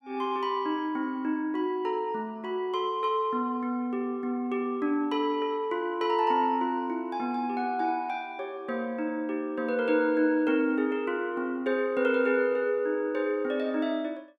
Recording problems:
none

